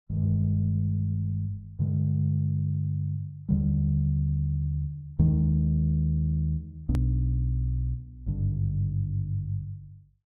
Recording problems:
hard cut with a click; at 7 s

